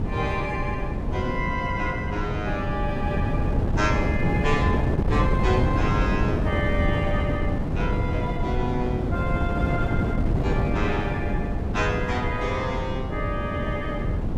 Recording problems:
wind on the microphone; below 260 Hz, SNR -3 dB

